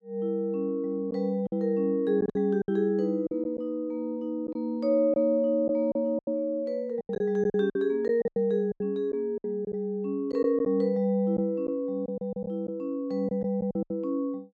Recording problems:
packet loss; 9% of the sound replaced, filled with silence

